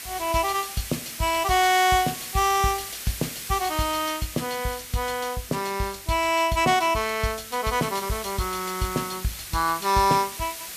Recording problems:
background hiss; slope +2 dB per octave, SNR 10 dB

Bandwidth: 14.5 kHz